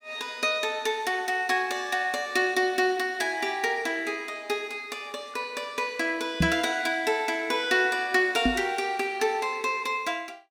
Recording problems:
microphone thump; at 6.5 s and at 8.5 s; peak +6 dB vs average level

